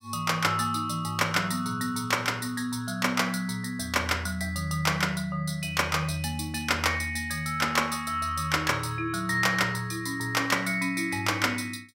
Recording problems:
none

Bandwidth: 16 kHz